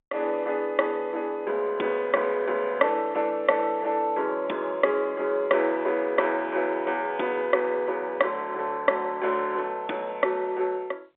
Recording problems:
telephone audio; 280 Hz to 3.6 kHz, G.711

